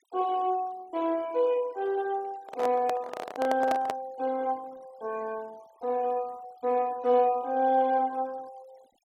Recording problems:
noise reduction artefacts; signal-to-artefact ratio 26 dB
handling noise; from 2.5 to 4 s; peak +1 dB vs average level

